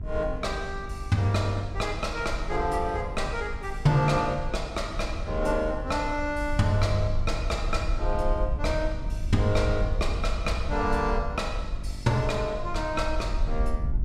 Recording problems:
hum; 50 Hz, harmonics up to 1.4 kHz, SNR 18 dB
wind noise; below 62 Hz, SNR 6 dB

